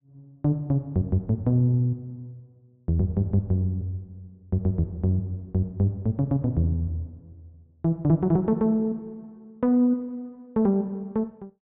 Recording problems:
treble cut off; nothing above 4 kHz

